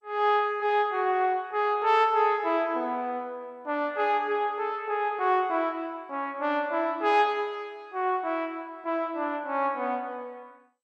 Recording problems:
codec artefacts; MP2, log-spectral distance 2 dB

